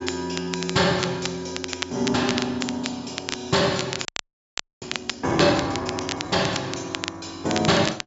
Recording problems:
treble cut off; nothing above 8 kHz
crackle; vinyl, SNR 8 dB
audio freezing; at 4 s for 1 s

